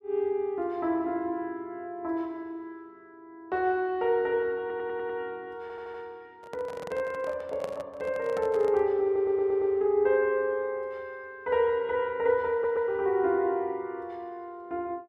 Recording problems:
audio stuttering; 4 times, first at 4.5 s
microphone handling noise; from 6.5 to 9 s; peak -4 dB vs average level

